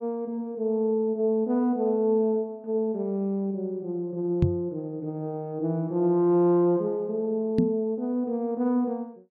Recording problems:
knock on the microphone; at 4.5 s and at 7.5 s; peak +7 dB vs average level

